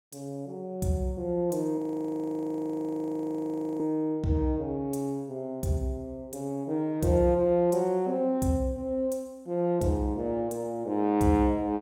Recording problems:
frozen audio; at 2 s for 2 s

